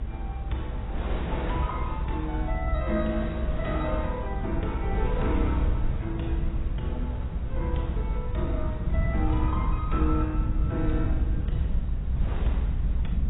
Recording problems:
lossy compression; AAC, log-spectral distance 2 dB, nothing above 3.8 kHz
low-frequency rumble; below 88 Hz, SNR -4 dB
wind noise; below 1.1 kHz, SNR 9 dB

